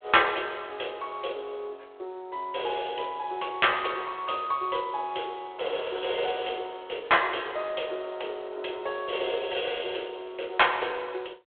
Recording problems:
phone line; 300 Hz to 3.5 kHz, G.726

